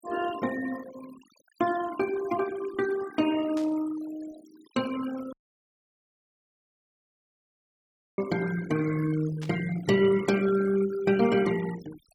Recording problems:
noise reduction artefacts; signal-to-artefact ratio 15 dB
burst of static; at 3.5 s and at 9.5 s; peak -12 dB vs average level
audio cutting out; at 5.5 s for 3 s

